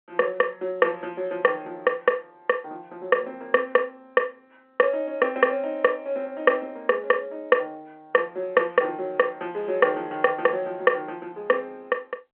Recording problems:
phone line; 280 Hz to 3.2 kHz, G.711

